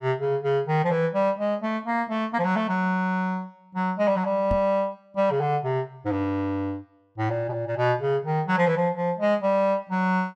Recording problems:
knock on the microphone; at 4.5 s; peak -1 dB vs average level

